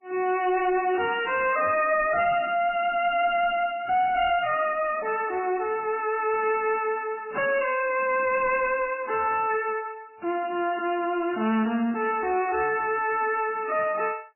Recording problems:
codec artefacts; MP3, log-spectral distance 4 dB, nothing above 2.8 kHz
distorted audio; soft clipping, signal-to-distortion ratio 9 dB

